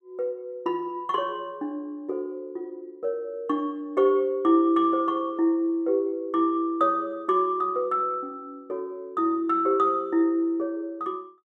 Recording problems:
none

